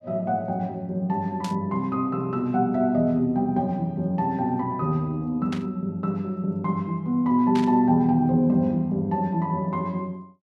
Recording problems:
static burst; at 1.5 s, at 5.5 s and at 7.5 s; peak -7 dB vs average level

